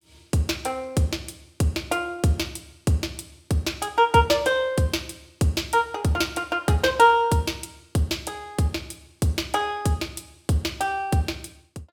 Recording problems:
none

